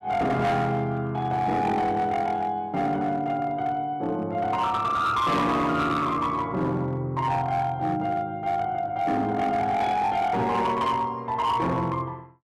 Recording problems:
distorted audio; hard clipping, signal-to-distortion ratio 12 dB

